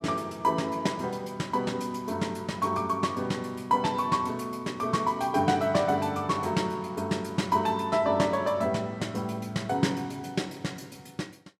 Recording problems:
none

